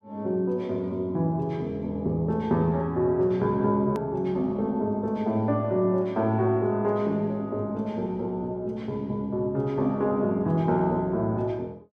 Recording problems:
click at an edit; at 4 s

